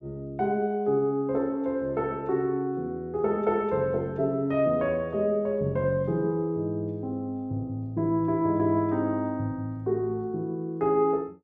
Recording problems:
none

